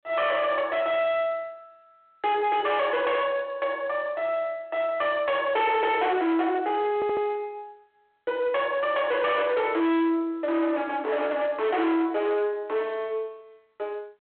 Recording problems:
phone line; 280 Hz to 3.6 kHz, G.726
distortion; soft clipping, signal-to-distortion ratio 7 dB
audio stuttering; at 7 s

